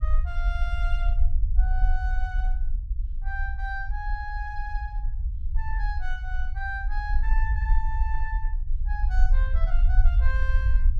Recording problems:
low-frequency rumble; below 50 Hz, strongest tone 20 Hz, SNR -9 dB

